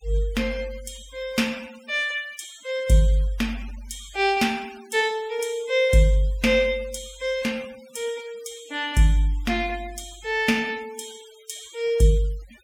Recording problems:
denoising artefacts; signal-to-artefact ratio 22 dB

